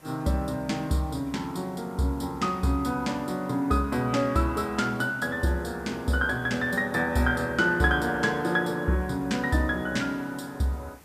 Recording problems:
background hiss; slope -5 dB per octave, SNR 26 dB

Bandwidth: 14.5 kHz